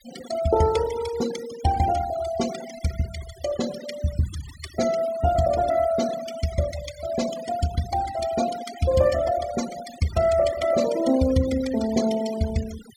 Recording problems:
noise reduction artefacts; signal-to-artefact ratio 13 dB

